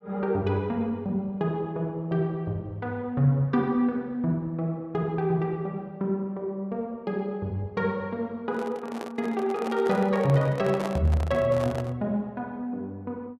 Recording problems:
handling noise; from 8.5 to 12 s; peak -2 dB vs average level

